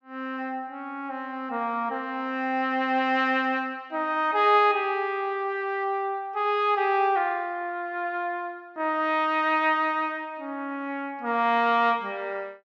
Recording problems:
none

